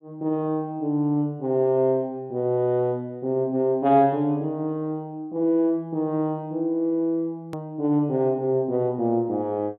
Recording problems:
treble missing; nothing above 4 kHz
hard cut with a click; at 7.5 s

